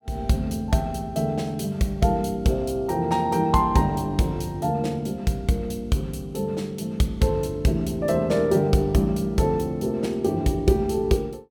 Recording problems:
none

